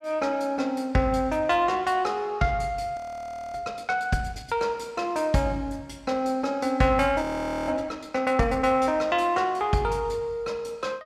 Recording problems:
audio freezing; at 3 s for 0.5 s and at 7 s

